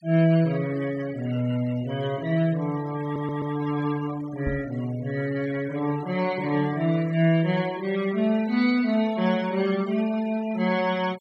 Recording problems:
noise reduction artefacts; signal-to-artefact ratio 19 dB
stutter; at 3 s
microphone thump; at 4.5 s; peak -2 dB vs average level

